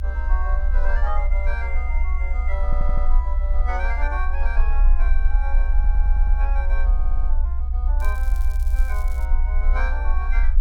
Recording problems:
low-frequency rumble; below 60 Hz, SNR -10 dB
stutter; at 2.5 s, at 5.5 s and at 7 s
crackle; from 8 to 9.5 s; loose cable, SNR 15 dB

